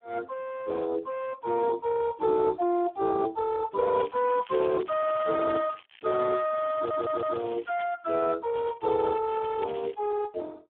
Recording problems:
telephone audio; 300 Hz to 2.6 kHz, Speex
crackling; from 4 to 6.5 s, at 7 s and from 8.5 to 10 s; loose cable, SNR 25 dB
audio stuttering; at 7 s

